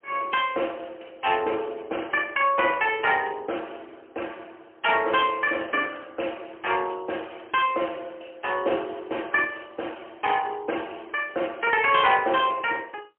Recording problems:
phone line; 280 Hz to 3.2 kHz, AMR-NB, then MP3

